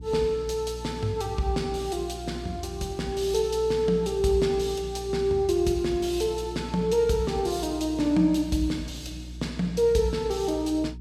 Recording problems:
hum; 60 Hz, harmonics up to 360 Hz, SNR 14 dB

